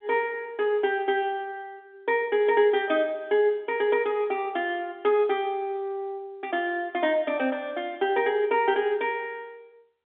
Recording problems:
phone line; 220 Hz to 3.6 kHz, G.711

